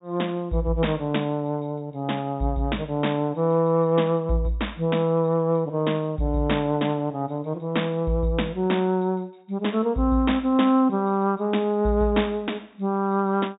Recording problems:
treble cut off; nothing above 4 kHz

